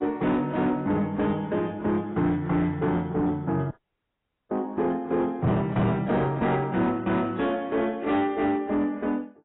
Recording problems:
codec artefacts; AAC, log-spectral distance 2 dB, nothing above 3.7 kHz
distorted audio; soft clipping, signal-to-distortion ratio 11 dB
dropout; at 3.5 s for 1 s

